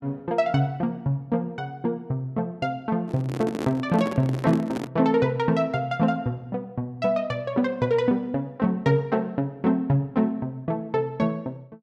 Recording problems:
microphone handling noise; from 3 to 5 s; peak -1 dB vs average level

